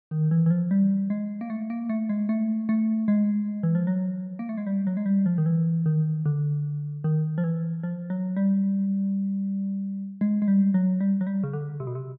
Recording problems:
low-pass filter; nothing above 5.2 kHz

